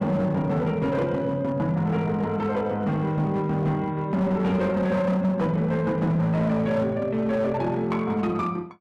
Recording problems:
distortion; hard clipping, signal-to-distortion ratio 12 dB

